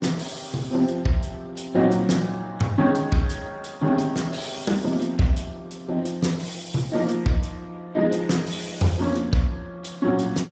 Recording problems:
lossy codec; Speex, log-spectral distance 5 dB, nothing above 7.8 kHz

